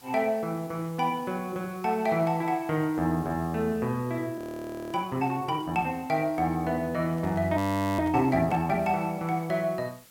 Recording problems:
hiss; slope 0 dB per octave, SNR 25 dB
frozen audio; at 4.5 s for 0.5 s and at 7.5 s
handling noise; from 7 to 8.5 s; peak -11 dB vs average level

